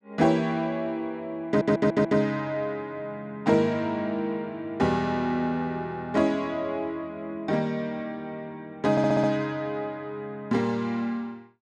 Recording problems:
stutter; at 1.5 s and at 9 s

